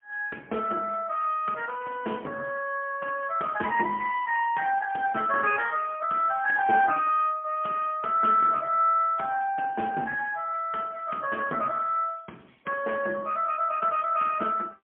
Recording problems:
telephone audio; 280 Hz to 3.2 kHz, AMR-NB, then MP3

